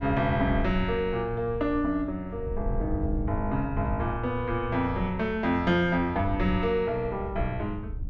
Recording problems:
wind noise; below 86 Hz, SNR 9 dB

